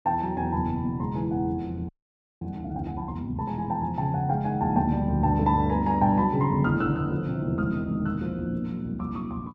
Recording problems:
frozen audio; at 2 s for 0.5 s

